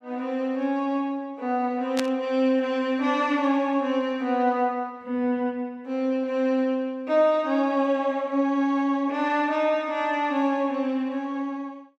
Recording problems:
static burst; at 2 s; peak 0 dB vs average level

